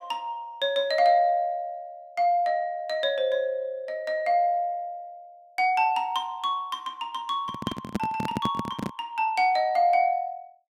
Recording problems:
microphone handling noise; from 7.5 to 9 s; peak +2 dB vs average level

